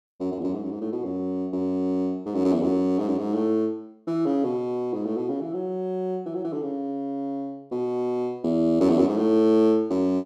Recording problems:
none

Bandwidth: 14 kHz